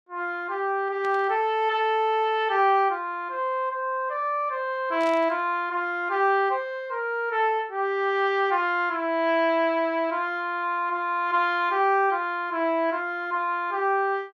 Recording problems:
static burst; at 1 s and at 5 s; peak -13 dB vs average level

